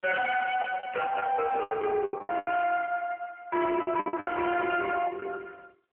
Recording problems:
telephone audio; 320 Hz to 3 kHz, AMR-NB
distorted audio; hard clipping, uneven, signal-to-distortion ratio 7 dB
lost packets; 12% of the sound replaced, filled with the last packet
static burst; at 1 s and at 3.5 s; peak -6 dB vs average level

